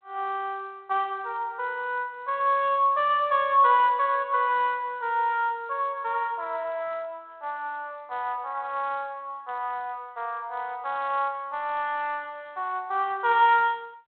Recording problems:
phone line; 320 Hz to 3.5 kHz, G.726

